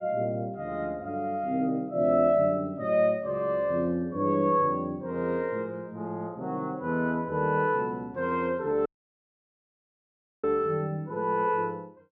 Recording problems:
audio cutting out; at 9 s for 1.5 s

